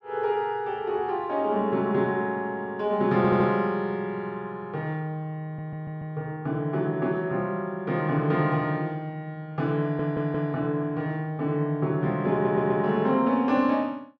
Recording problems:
stutter; 4 times, first at 3 s

